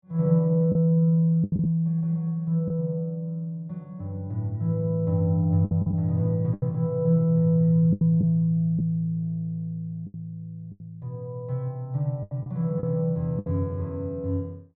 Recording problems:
packet loss; 6% of the sound replaced, filled with the last packet

